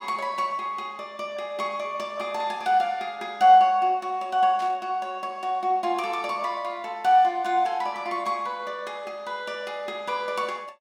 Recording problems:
static burst; at 4.5 s; peak -14 dB vs average level

